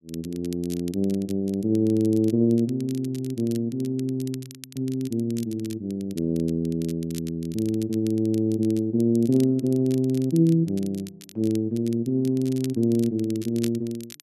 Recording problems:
crackle; vinyl, SNR 21 dB

